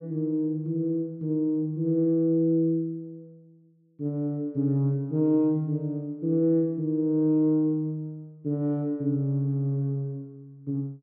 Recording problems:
none

